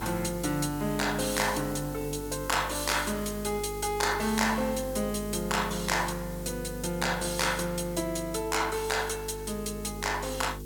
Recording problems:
electrical hum; 50 Hz, harmonics up to 450 Hz, SNR 12 dB
background hiss; slope +2 dB per octave, SNR 16 dB

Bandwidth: 17.5 kHz